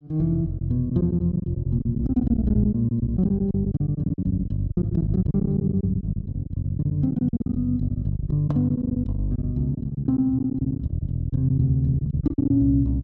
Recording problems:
packet loss; 16% of the sound replaced, filled with silence

